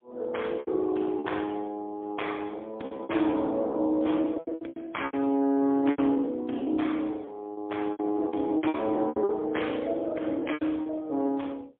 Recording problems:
phone line; 220 Hz to 3.4 kHz, AMR-NB, then MP3
lost packets; 15% of the sound replaced, filled with repeated pitch periods

